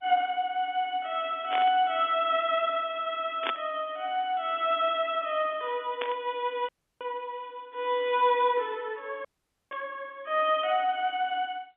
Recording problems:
telephone audio; 220 Hz to 3.6 kHz, G.711
burst of static; 4 times, first at 1.5 s; peak +1 dB vs average level
audio cutting out; at 6.5 s and at 9.5 s

